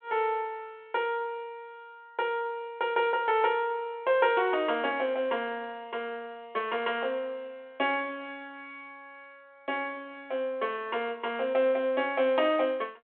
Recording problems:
phone line; 320 Hz to 3.4 kHz, G.726

